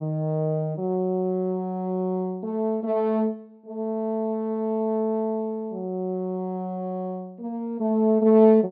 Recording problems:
treble missing; nothing above 4.9 kHz

